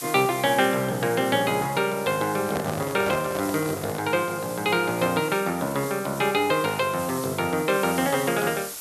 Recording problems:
background hiss; slope +1 dB per octave, SNR 12 dB
microphone handling noise; from 2.5 to 4 s; peak -2 dB vs average level

